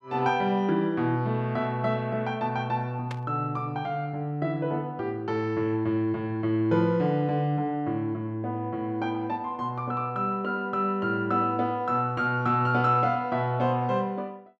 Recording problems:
burst of static; at 3 s; peak -8 dB vs average level

